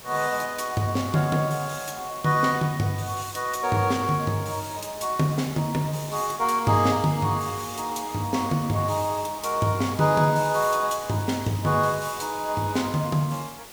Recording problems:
hiss; slope -2 dB per octave, SNR 16 dB

